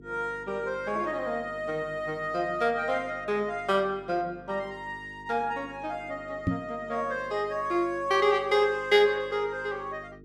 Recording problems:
hum; 50 Hz, harmonics up to 450 Hz, SNR 21 dB
microphone bump; at 6.5 s; peak +5 dB vs average level

